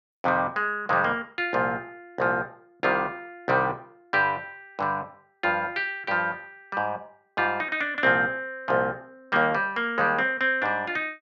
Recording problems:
none

